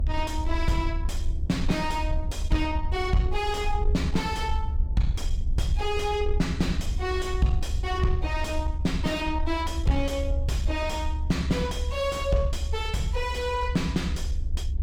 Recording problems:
distorted audio; soft clipping, signal-to-distortion ratio 7 dB
rumble; below 70 Hz, SNR 1 dB

